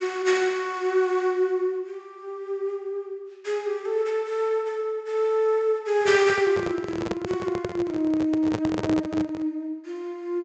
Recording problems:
low-pass filter; nothing above 8 kHz
handling noise; from 6 to 9.5 s; peak 0 dB vs average level

